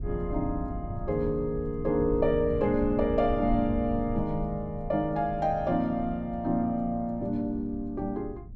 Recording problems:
low-frequency rumble; below 100 Hz, SNR 10 dB

